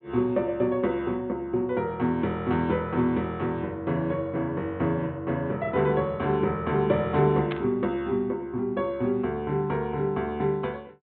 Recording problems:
treble missing; nothing above 4 kHz
burst of static; at 7.5 s; peak -4 dB vs average level

